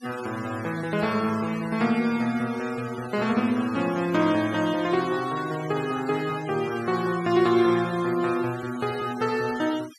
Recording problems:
denoising artefacts; signal-to-artefact ratio 16 dB

